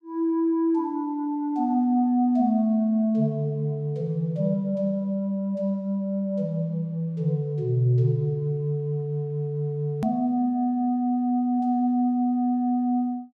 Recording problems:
hard cut with a click; at 10 s

